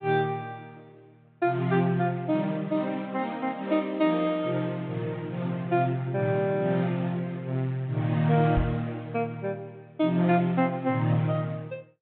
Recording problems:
low-pass filter; nothing above 4 kHz
microphone bump; at 8.5 s; peak +3 dB vs average level

